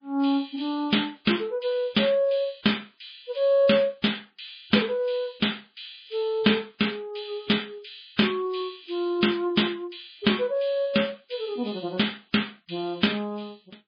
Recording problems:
codec artefacts; MP3, log-spectral distance 6 dB, nothing above 4.4 kHz

